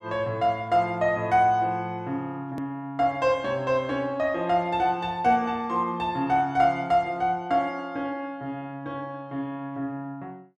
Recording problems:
click at an edit; at 2.5 s

